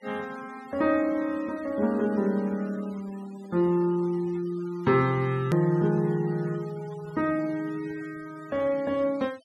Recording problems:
denoising artefacts; signal-to-artefact ratio 23 dB
edit click; at 5.5 s

